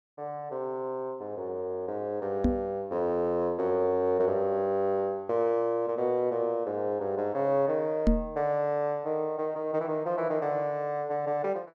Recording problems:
microphone bump; at 2.5 s and at 8 s; peak +8 dB vs average level

